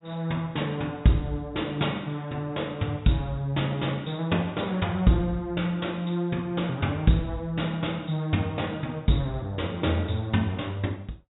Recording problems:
treble cut off; nothing above 4 kHz

